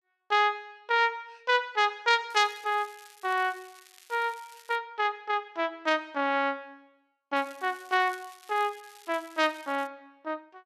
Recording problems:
crackle; from 2.5 to 5 s and from 7.5 to 10 s; loose cable, SNR 24 dB

